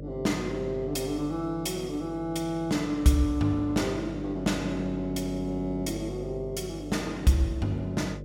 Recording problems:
hum; 50 Hz, harmonics up to 600 Hz, SNR 11 dB

